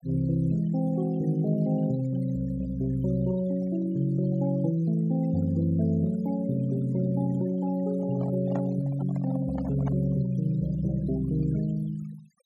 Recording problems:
denoising artefacts; signal-to-artefact ratio 21 dB
handling noise; from 8 to 10 s; peak -5 dB vs average level

